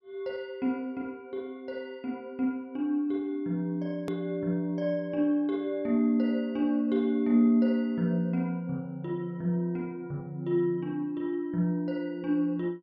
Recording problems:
hard cut with a click; at 4 s

